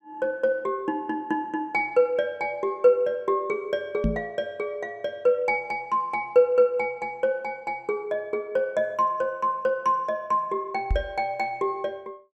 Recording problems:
knock on the microphone; at 4 s and at 11 s; peak +4 dB vs average level

